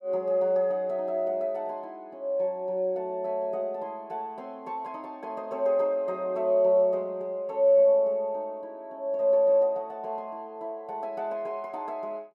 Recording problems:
none

